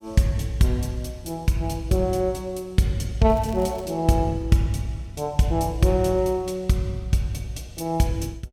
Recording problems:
crackle; at 3.5 s; loose cable, SNR 25 dB

